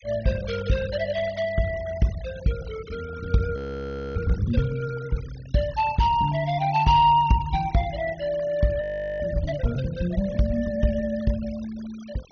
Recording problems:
treble cut off; nothing above 6.4 kHz
denoising artefacts; signal-to-artefact ratio 19 dB
audio freezing; at 3.5 s for 0.5 s and at 9 s

